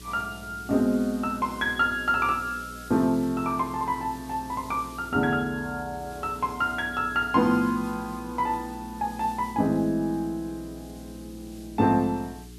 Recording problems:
hum; 60 Hz, harmonics up to 420 Hz, SNR 19 dB
background hiss; slope +3 dB per octave, SNR 22 dB

